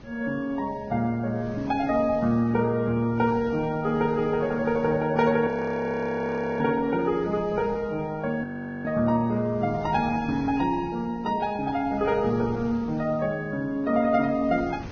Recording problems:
lossy compression; Vorbis, log-spectral distance 2 dB, nothing above 6.3 kHz
wind noise; below 410 Hz, SNR 19 dB
audio freezing; at 5.5 s for 1 s and at 8.5 s

